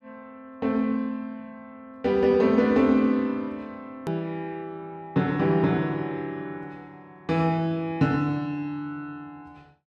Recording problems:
edit click; at 4 s

